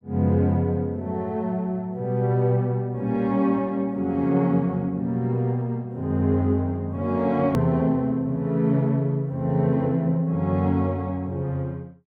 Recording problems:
hard cut with a click; at 7.5 s

